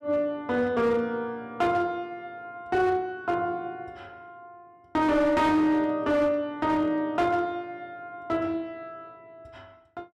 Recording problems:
distorted audio; hard clipping, signal-to-distortion ratio 12 dB

